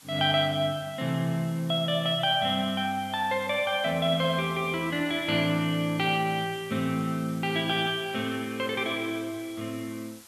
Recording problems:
background hiss; slope +1 dB per octave, SNR 21 dB

